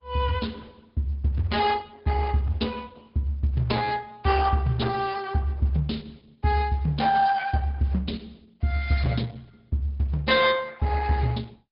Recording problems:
treble missing; nothing above 5 kHz
lossy compression; Opus, log-spectral distance 3 dB

